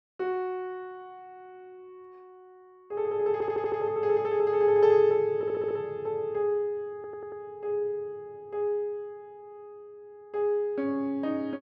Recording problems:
stutter; at 3.5 s, at 5.5 s and at 7 s

